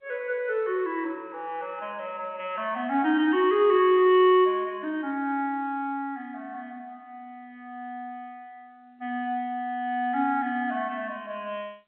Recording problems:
phone line; 260 Hz to 3.3 kHz, G.711

